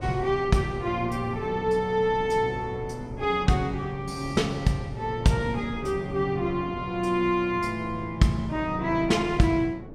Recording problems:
wind on the microphone; below 340 Hz, SNR 13 dB

